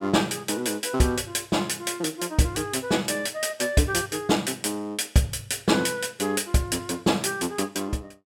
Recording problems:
none

